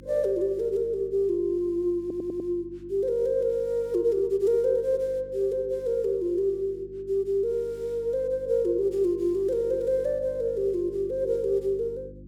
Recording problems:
hum; 50 Hz, harmonics up to 350 Hz, SNR 21 dB
stutter; at 2 s

